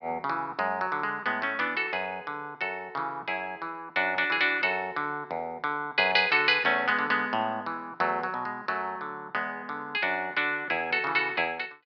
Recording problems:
low-pass filter; nothing above 5.5 kHz

